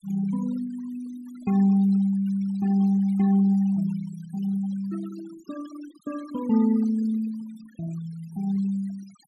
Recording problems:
noise reduction artefacts; signal-to-artefact ratio 23 dB

